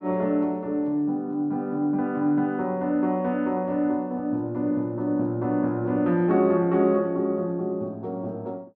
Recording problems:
none

